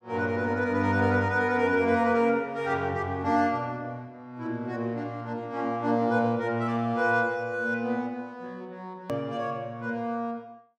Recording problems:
click at an edit; at 9 s

